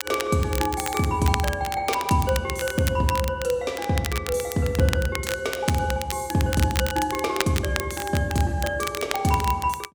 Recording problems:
crackling; vinyl, SNR 8 dB

